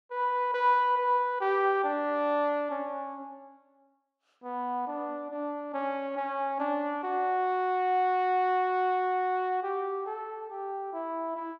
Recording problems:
none

